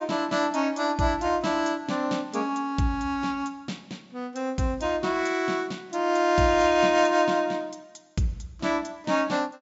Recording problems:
treble missing; nothing above 8 kHz

